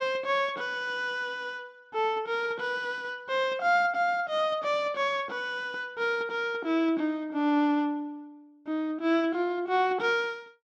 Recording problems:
none

